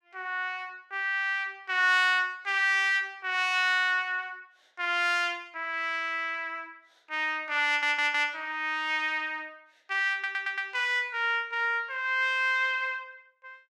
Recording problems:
audio stuttering; at 7.5 s and at 10 s

